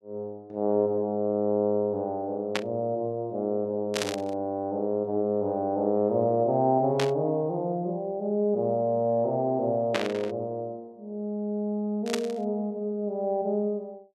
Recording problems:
burst of static; 5 times, first at 2.5 s; peak +3 dB vs average level

